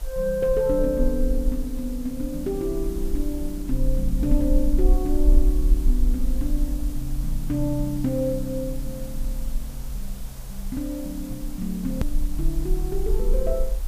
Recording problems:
background hiss; slope -3 dB per octave, SNR 16 dB
rumble; below 44 Hz, SNR 1 dB
click at an edit; at 12 s

